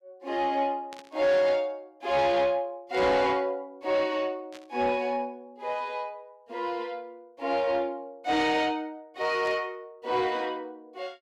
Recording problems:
distorted audio; soft clipping, signal-to-distortion ratio 11 dB
static burst; 4 times, first at 1 s; peak -13 dB vs average level

